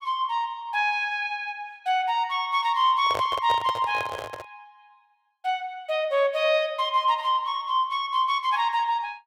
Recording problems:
microphone handling noise; from 3 to 4.5 s; peak -3 dB vs average level

